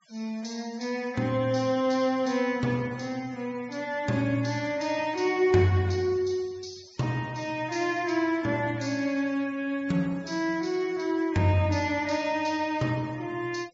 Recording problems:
treble missing; nothing above 8 kHz
noise reduction artefacts; signal-to-artefact ratio 24 dB

